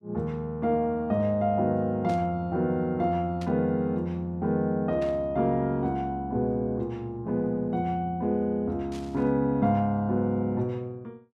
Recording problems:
static burst; 4 times, first at 2 s; peak -13 dB vs average level

